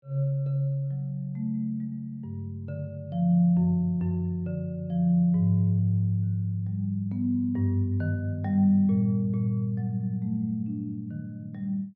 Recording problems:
none

